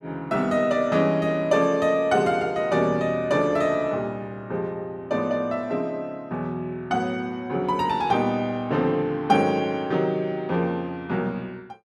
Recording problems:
none

